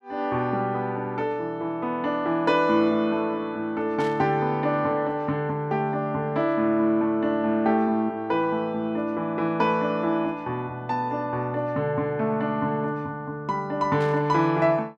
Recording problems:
static burst; at 4 s and at 14 s; peak -11 dB vs average level

